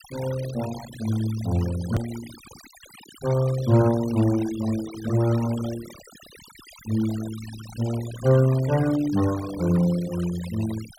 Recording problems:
noise reduction artefacts; signal-to-artefact ratio 16 dB
edit click; at 2 s

